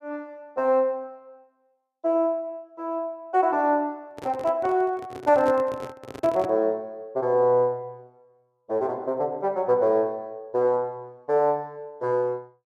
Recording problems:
handling noise; from 4 to 6.5 s; peak -6 dB vs average level

